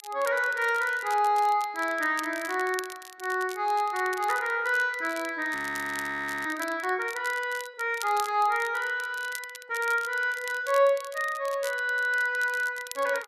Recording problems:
crackling; vinyl, SNR 16 dB
audio freezing; at 5.5 s for 1 s

